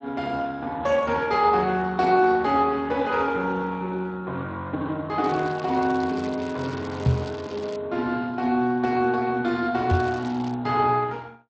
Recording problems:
codec artefacts; Speex, log-spectral distance 4 dB
crackling; from 5 to 8 s and at 10 s; loose cable, SNR 20 dB
knock on the microphone; at 7 s and at 10 s; peak +5 dB vs average level

